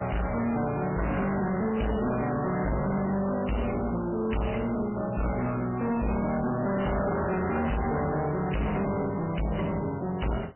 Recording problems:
codec artefacts; MP3, log-spectral distance 6 dB, nothing above 3 kHz
distorted audio; hard clipping, uneven, signal-to-distortion ratio 5 dB

